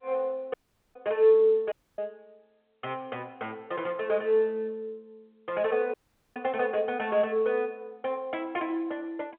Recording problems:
phone line; 280 Hz to 3.7 kHz, G.711
audio cutting out; at 0.5 s, at 1.5 s and at 6 s

